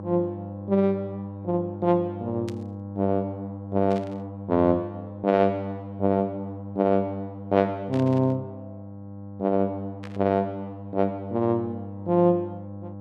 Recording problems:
hum; 50 Hz, harmonics up to 1.1 kHz, SNR 12 dB
static burst; 4 times, first at 2.5 s; peak -12 dB vs average level

